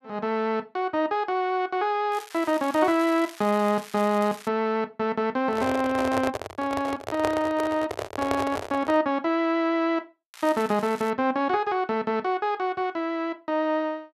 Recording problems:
crackle; from 2 to 4.5 s and at 10 s; loose cable, SNR 18 dB
microphone handling noise; from 5.5 to 9 s; peak +1 dB vs average level

